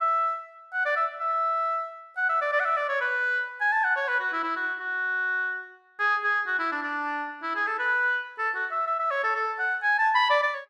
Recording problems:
none

